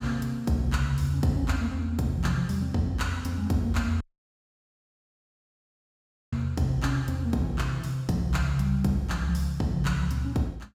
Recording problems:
dropout; at 4 s for 2.5 s

